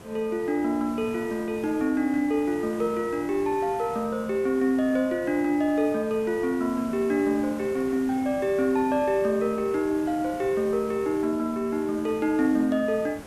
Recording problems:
background hiss; slope -6 dB per octave, SNR 17 dB

